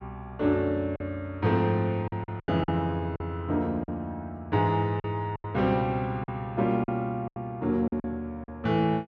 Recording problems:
lost packets; 8% of the sound replaced, filled with silence

